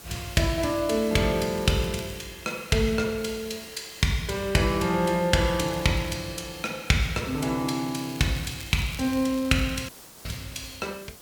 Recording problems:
background hiss; SNR 18 dB
crackle; at 1.5 s, at 5.5 s and from 8 to 10 s; loose cable, SNR 20 dB
dropout; at 10 s

